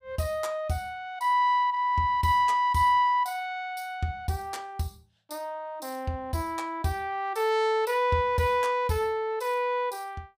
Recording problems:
none

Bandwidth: 15.5 kHz